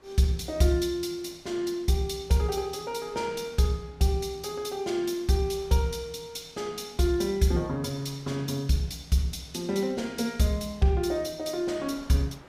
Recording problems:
wind on the microphone; below 1.4 kHz, SNR 27 dB

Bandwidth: 15.5 kHz